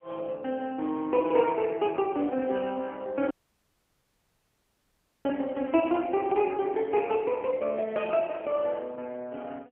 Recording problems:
phone line; 240 Hz to 3.3 kHz, AMR-NB
audio cutting out; at 3.5 s for 2 s

